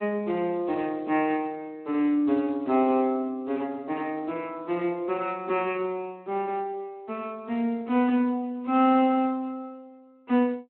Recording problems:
telephone audio; 220 Hz to 3.1 kHz, Speex

